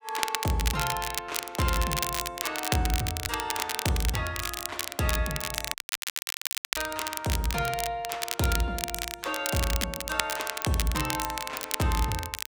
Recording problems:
crackling; vinyl, SNR 2 dB
audio cutting out; at 5.5 s for 1 s

